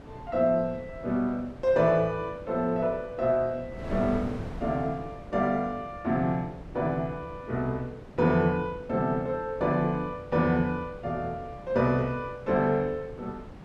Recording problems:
wind on the microphone; below 420 Hz, SNR 16 dB

